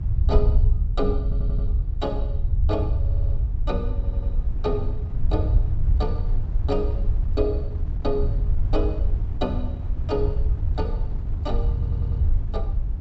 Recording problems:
low-pass filter; nothing above 7.9 kHz
electrical hum; 50 Hz, harmonics up to 400 Hz, SNR 22 dB
low-frequency rumble; below 78 Hz, SNR -5 dB
wind on the microphone; below 270 Hz, SNR 12 dB
audio stuttering; 4 times, first at 1 s

